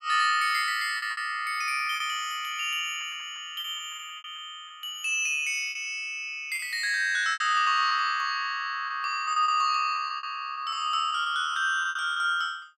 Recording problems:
lost packets; 10% of the sound replaced, filled with repeated pitch periods

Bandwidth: 15 kHz